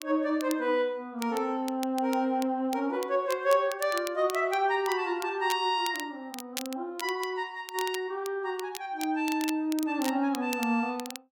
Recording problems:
crackle; vinyl, SNR 14 dB

